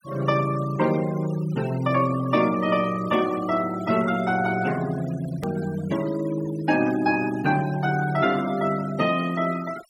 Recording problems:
denoising artefacts; signal-to-artefact ratio 17 dB
click at an edit; at 5.5 s

